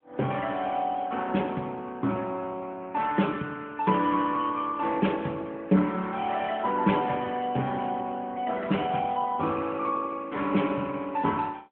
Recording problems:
telephone audio; 150 Hz to 3.3 kHz, AMR-NB

